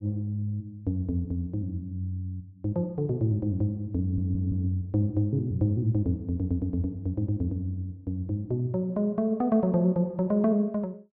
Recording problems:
stutter; at 4 s

